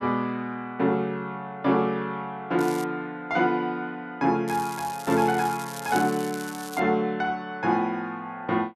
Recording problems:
crackling; at 2.5 s and from 4.5 to 7 s; loose cable, SNR 14 dB

